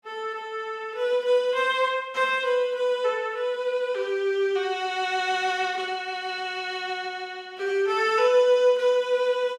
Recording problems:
none

